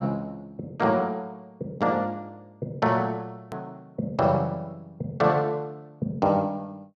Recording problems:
hard cut with a click; at 3.5 s

